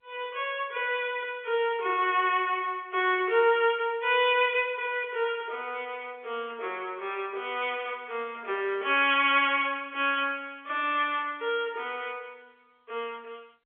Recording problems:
phone line; 320 Hz to 3.5 kHz, G.711

